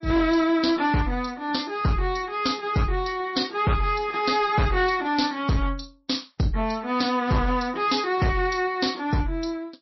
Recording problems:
lossy codec; MP3, log-spectral distance 4 dB, nothing above 5.7 kHz
distorted audio; hard clipping, signal-to-distortion ratio 11 dB

